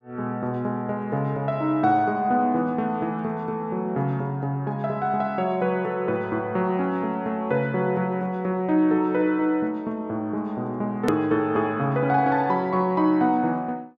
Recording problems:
click at an edit; at 11 s

